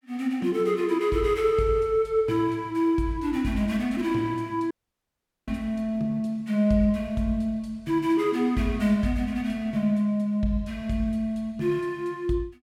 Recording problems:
dropout; at 4.5 s for 1 s

